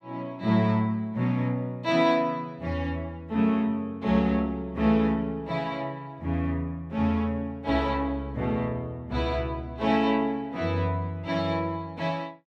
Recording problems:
none

